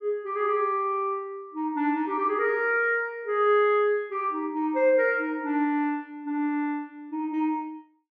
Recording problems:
none

